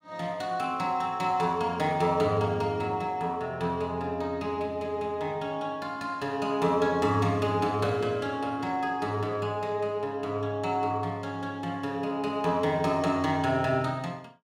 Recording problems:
none

